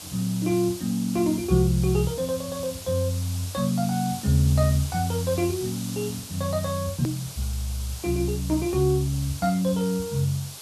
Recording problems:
hiss; SNR 12 dB
edit click; at 7 s

